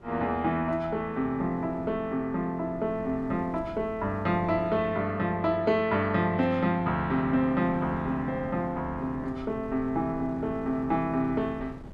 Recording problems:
wind noise; below 320 Hz, SNR 18 dB

